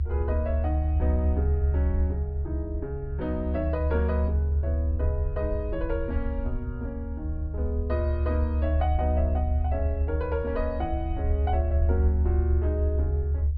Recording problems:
treble missing; nothing above 5.5 kHz
low-frequency rumble; below 76 Hz, strongest tone 74 Hz, SNR -5 dB

